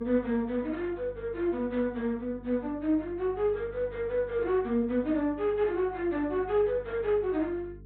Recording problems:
treble cut off; nothing above 4 kHz
hum; 50 Hz, harmonics up to 450 Hz, SNR 20 dB

